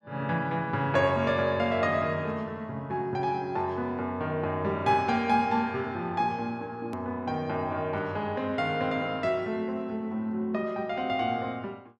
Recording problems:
edit click; at 7 s

